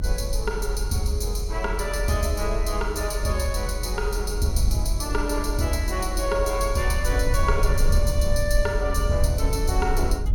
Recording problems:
low-frequency rumble; below 60 Hz, SNR 1 dB

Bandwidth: 17 kHz